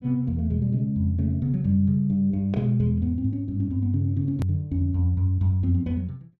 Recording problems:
edit click; at 4.5 s

